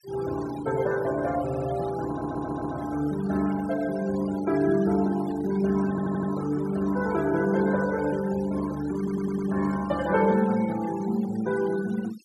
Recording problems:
noise reduction artefacts; signal-to-artefact ratio 17 dB
audio stuttering; 4 times, first at 1.5 s

